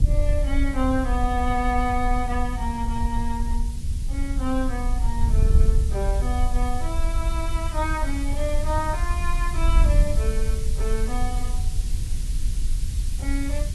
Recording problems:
lossy compression; AAC, log-spectral distance 2 dB
hiss; SNR 13 dB
wind on the microphone; below 62 Hz, SNR -3 dB

